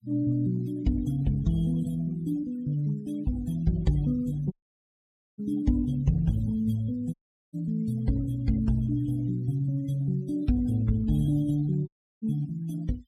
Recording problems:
denoising artefacts; signal-to-artefact ratio 23 dB
audio cutting out; at 4.5 s for 1 s, at 7 s and at 12 s

